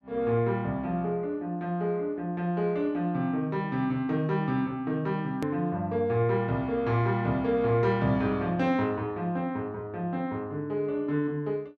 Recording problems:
hard cut with a click; at 5.5 s

